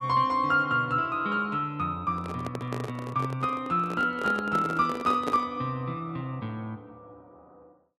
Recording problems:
microphone handling noise; from 2 to 5.5 s; peak 0 dB vs average level

